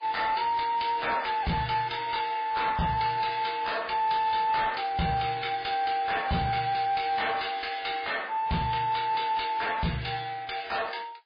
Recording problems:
lossy codec; MP3, log-spectral distance 5 dB, nothing above 4.6 kHz
distortion; soft clipping, signal-to-distortion ratio 11 dB

